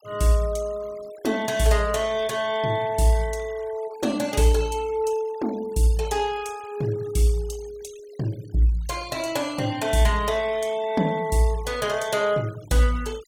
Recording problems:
denoising artefacts; signal-to-artefact ratio 21 dB

